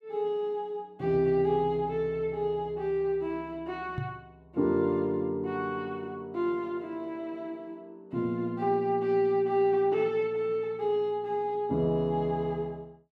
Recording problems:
microphone thump; at 4 s; peak -1 dB vs average level

